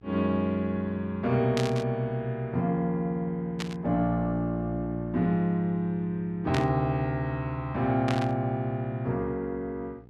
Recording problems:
hum; 60 Hz, harmonics up to 900 Hz, SNR 24 dB
static burst; 4 times, first at 1.5 s; peak -1 dB vs average level

